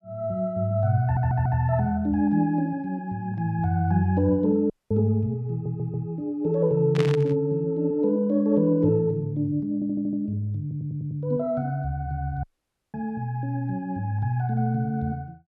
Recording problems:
audio stuttering; 4 times, first at 1 s
dropout; at 4.5 s and at 12 s for 0.5 s
static burst; at 7 s; peak -3 dB vs average level

